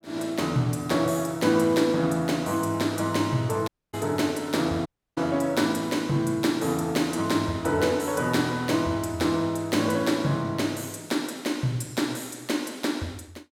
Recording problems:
audio cutting out; at 3.5 s and at 5 s

